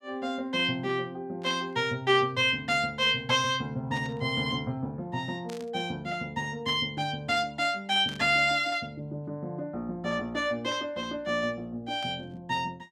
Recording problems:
burst of static; 5 times, first at 1.5 s; peak -11 dB vs average level

